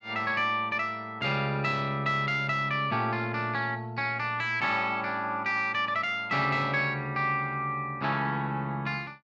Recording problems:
none

